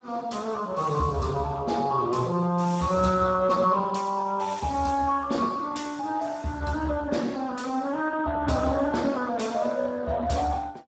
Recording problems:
lossy compression; Speex, log-spectral distance 4 dB, nothing above 7.8 kHz

